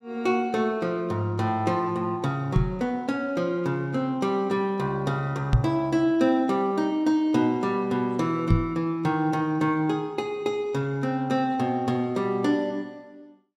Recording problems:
microphone bump; at 2.5 s, at 5.5 s and at 8.5 s; peak +8 dB vs average level

